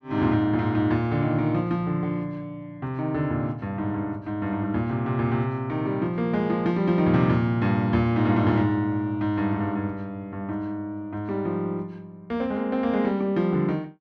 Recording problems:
none

